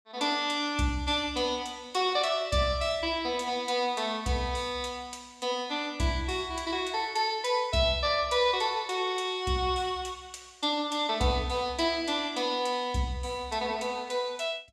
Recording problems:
none

